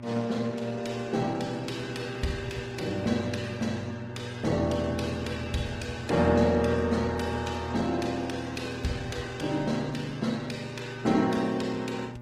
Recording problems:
lossy codec; Opus, log-spectral distance 4 dB, nothing above 17.7 kHz
hum; 60 Hz, harmonics up to 1.4 kHz, SNR 12 dB

